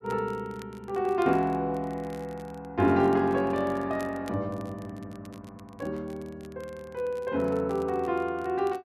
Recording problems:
crackling; vinyl, SNR 27 dB

